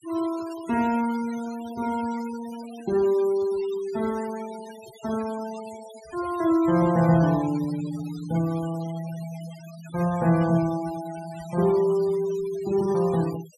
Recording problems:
denoising artefacts; signal-to-artefact ratio 18 dB

